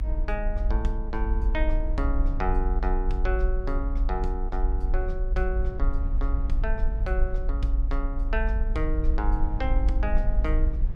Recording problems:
rumble; below 50 Hz, strongest tone 30 Hz, SNR -5 dB

